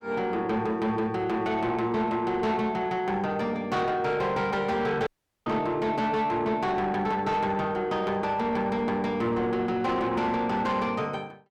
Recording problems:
distorted audio; soft clipping, signal-to-distortion ratio 11 dB
audio cutting out; at 5 s

